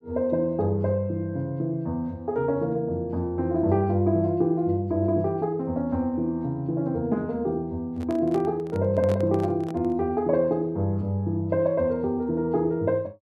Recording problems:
microphone handling noise; from 8 to 10 s; peak -5 dB vs average level

